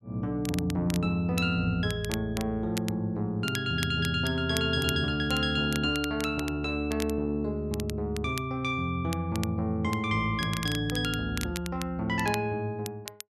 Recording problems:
crackling; vinyl, SNR 13 dB

